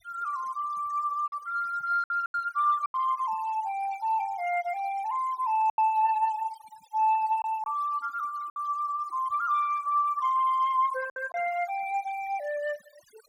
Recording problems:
noise reduction artefacts; signal-to-artefact ratio 20 dB
lost packets; 4% of the sound replaced, filled with silence

